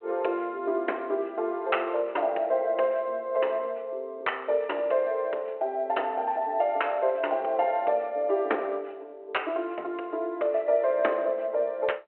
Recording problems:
phone line; 300 Hz to 3.2 kHz, G.726

